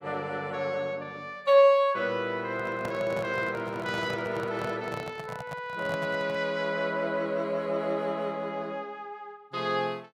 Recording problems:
handling noise; from 2.5 to 6.5 s; peak -5 dB vs average level

